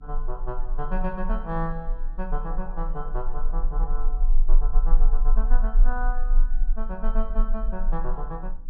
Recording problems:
hum; 50 Hz, harmonics up to 300 Hz, SNR 21 dB
rumble; below 30 Hz, strongest tone 22 Hz, SNR -6 dB

